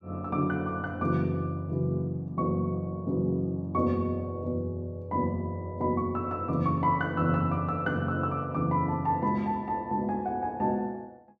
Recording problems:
none

